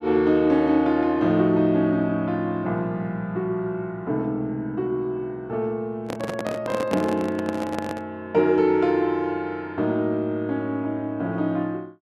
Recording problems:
handling noise; from 6 to 8 s; peak +1 dB vs average level

